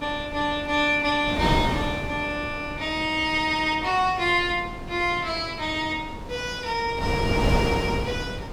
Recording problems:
wind on the microphone; below 560 Hz, SNR 6 dB

